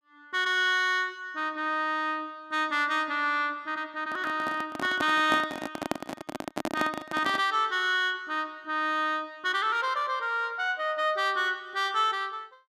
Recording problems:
microphone handling noise; from 4 to 7.5 s; peak +3 dB vs average level

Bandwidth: 14.5 kHz